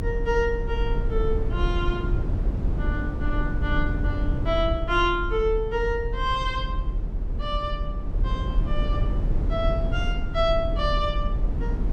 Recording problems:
low-frequency rumble; below 80 Hz, strongest tone 38 Hz, SNR 0 dB

